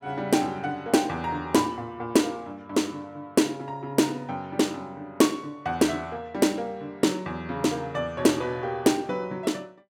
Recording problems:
none

